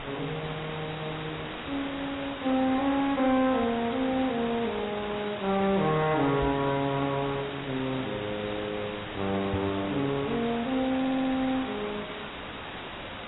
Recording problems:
lossy compression; AAC, log-spectral distance 9 dB, nothing above 3.8 kHz
distorted audio; soft clipping, signal-to-distortion ratio 1 dB
hiss; SNR 3 dB
crackle; from 1 to 4.5 s, at 5 s and at 7 s; loose cable, SNR 19 dB
microphone thump; at 6.5 s and at 9.5 s; peak +1 dB vs average level
stutter; at 11 s

